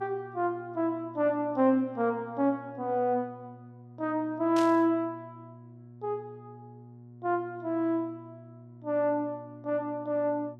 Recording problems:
hum; 60 Hz, harmonics up to 720 Hz, SNR 20 dB
burst of static; at 4.5 s; peak -6 dB vs average level

